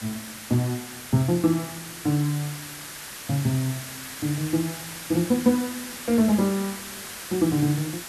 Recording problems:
hiss; SNR 10 dB

